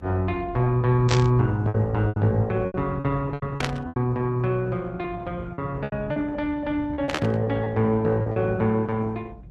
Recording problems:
lossy compression; Opus, log-spectral distance 2 dB
rumble; below 140 Hz, SNR 13 dB
packet loss; 10% of the sound replaced, filled with repeated pitch periods
burst of static; at 1 s, at 3.5 s and at 7 s; peak +2 dB vs average level

